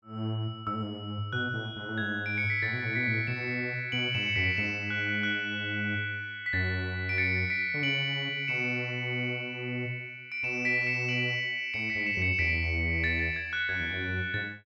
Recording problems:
none

